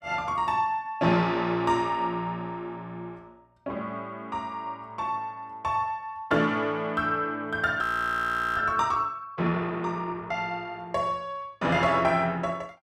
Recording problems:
audio freezing; at 8 s for 1 s

